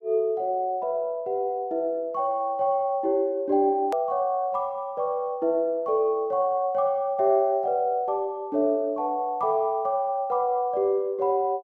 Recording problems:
edit click; at 4 s

